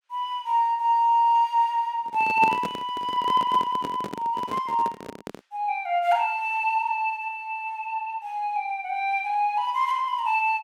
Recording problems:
handling noise; from 2 to 5.5 s; peak -2 dB vs average level

